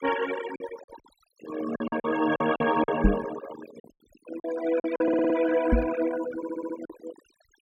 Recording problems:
denoising artefacts; signal-to-artefact ratio 11 dB
packet loss; 10% of the sound replaced, filled with silence
knock on the microphone; at 3 s and at 5.5 s; peak +9 dB vs average level
audio stuttering; at 5 s and at 6.5 s

